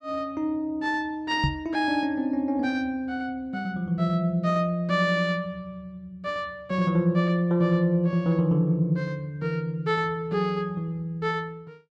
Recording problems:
knock on the microphone; at 1.5 s; peak +4 dB vs average level

